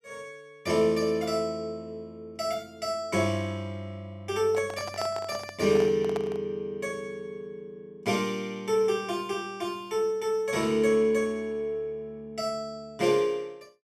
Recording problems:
handling noise; from 4.5 to 6.5 s; peak -3 dB vs average level

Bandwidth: 13.5 kHz